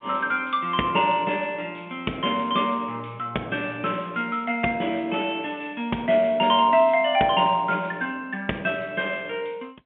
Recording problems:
phone line; 190 Hz to 3.5 kHz, G.711

